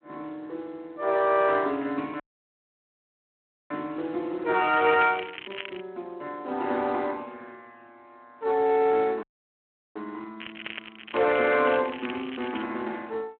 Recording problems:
phone line; 220 Hz to 3.2 kHz, Speex
dropout; at 2 s for 1.5 s and at 9 s for 0.5 s
crackling; from 4.5 to 6 s and from 10 to 13 s; loose cable, SNR 13 dB

